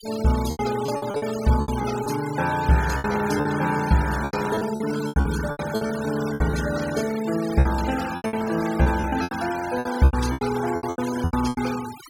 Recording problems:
noise reduction artefacts; signal-to-artefact ratio 12 dB
packet loss; 16% of the sound replaced, filled with repeated pitch periods

